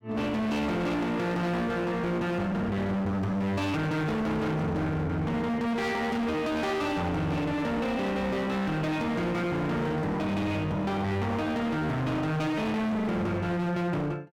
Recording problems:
distorted audio; hard clipping, uneven, signal-to-distortion ratio 5 dB

